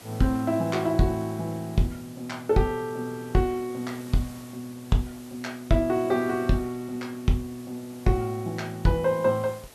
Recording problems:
hiss; slope -3 dB per octave, SNR 21 dB

